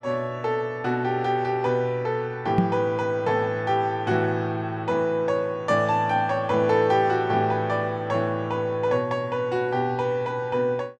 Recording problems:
microphone bump; at 2.5 s; peak +7 dB vs average level

